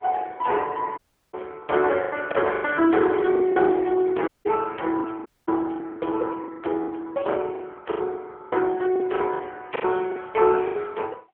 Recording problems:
phone line; 300 Hz to 3.3 kHz, AMR-NB
lost packets; 11% of the sound replaced, filled with the last packet
dropout; at 1 s, at 4.5 s and at 5.5 s

